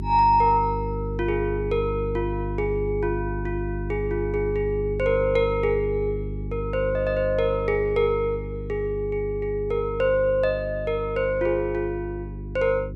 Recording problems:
hum; 50 Hz, harmonics up to 400 Hz, SNR 7 dB

